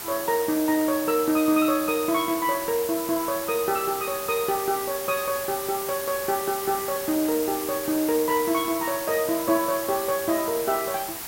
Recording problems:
hiss; SNR 7 dB

